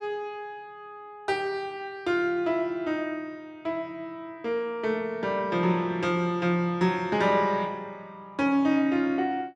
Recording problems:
none

